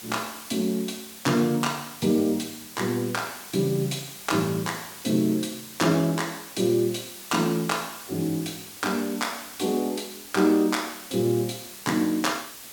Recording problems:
background hiss; slope 0 dB per octave, SNR 13 dB

